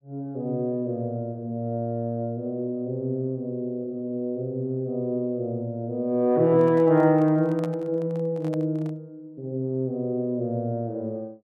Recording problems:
microphone handling noise; from 6.5 to 9 s; peak -8 dB vs average level

